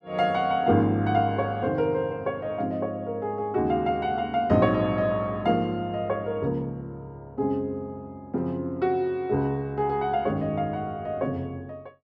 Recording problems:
none

